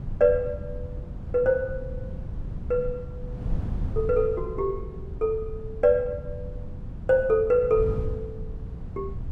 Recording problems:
wind noise; below 120 Hz, SNR 10 dB

